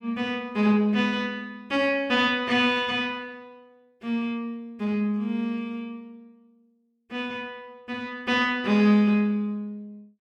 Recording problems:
none

